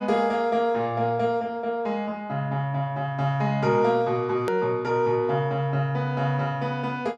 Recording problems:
edit click; at 4.5 s

